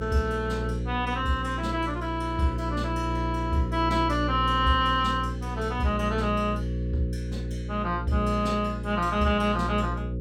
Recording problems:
hum; 60 Hz, harmonics up to 540 Hz, SNR 5 dB

